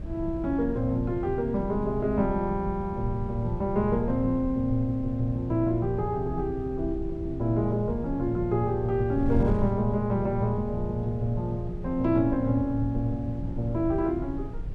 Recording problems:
wind noise; below 110 Hz, SNR 9 dB

